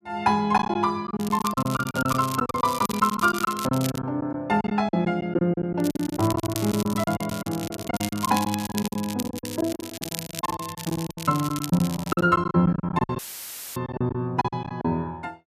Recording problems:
packet loss; 16% of the sound replaced, filled with silence
crackle; from 1 to 4 s and from 6 to 12 s; loose cable, SNR 11 dB
audio cutting out; at 13 s for 0.5 s; filled with static

